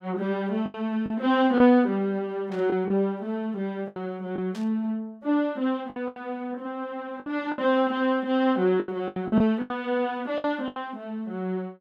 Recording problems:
packet loss; 8% of the sound replaced, filled with the last packet
burst of static; at 2.5 s and at 4.5 s; peak -14 dB vs average level

